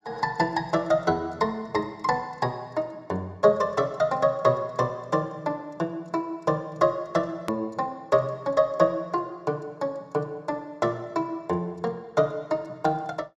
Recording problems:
edit click; at 7.5 s

